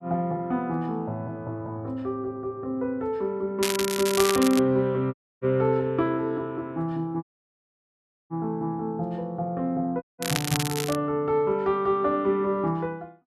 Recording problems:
crackle; at 3.5 s and at 10 s; loose cable, SNR 3 dB
dropout; at 5 s, at 7 s for 1 s and at 10 s

